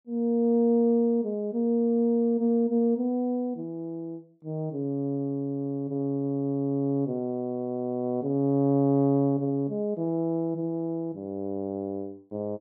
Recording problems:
none

